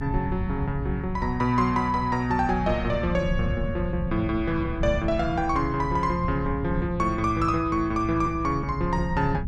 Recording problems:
rumble; below 140 Hz, SNR 7 dB

